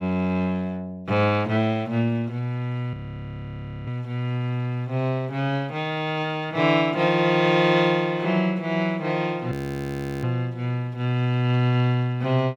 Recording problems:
frozen audio; at 3 s for 1 s and at 9.5 s for 0.5 s

